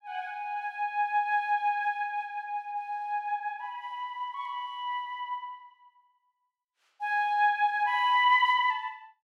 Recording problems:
none

